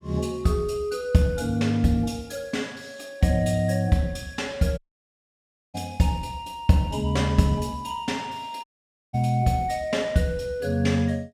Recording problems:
audio cutting out; at 5 s for 1 s and at 8.5 s

